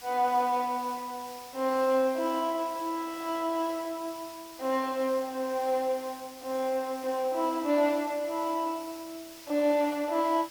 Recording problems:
hiss; slope +1 dB per octave, SNR 17 dB

